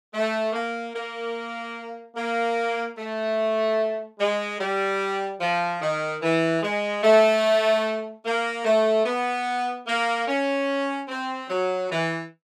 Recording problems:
none

